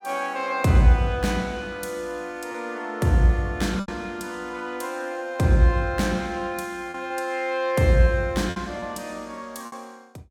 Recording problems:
packet loss; 3% of the sound replaced, filled with repeated pitch periods

